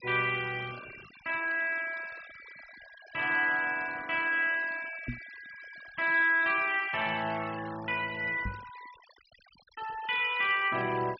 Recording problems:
treble missing; nothing above 5.5 kHz
denoising artefacts; signal-to-artefact ratio 19 dB
microphone thump; at 5 s and at 8.5 s; peak -3 dB vs average level

